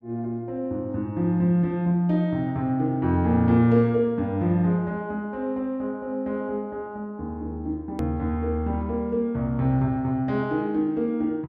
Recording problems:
edit click; at 8 s

